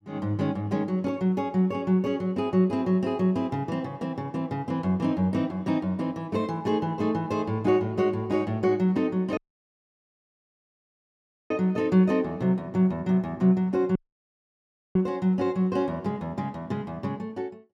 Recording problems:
dropout; at 9.5 s for 2 s and at 14 s for 1 s

